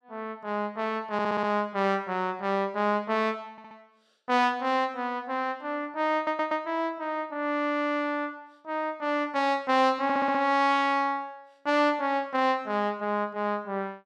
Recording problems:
stutter; 4 times, first at 1 s

